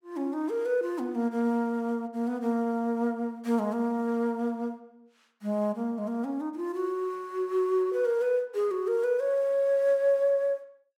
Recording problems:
none

